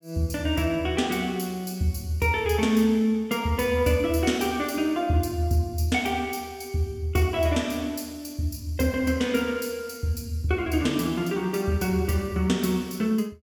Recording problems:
none

